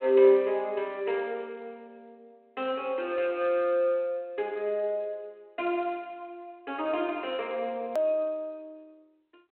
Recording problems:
phone line; 240 Hz to 3.1 kHz, G.726
edit click; at 8 s

